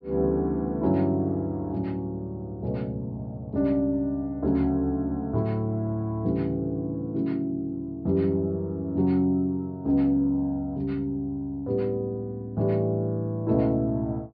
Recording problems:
low-pass filter; nothing above 5.5 kHz

